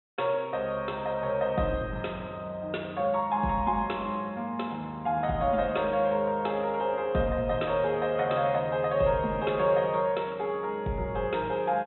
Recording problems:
treble missing; nothing above 3.9 kHz

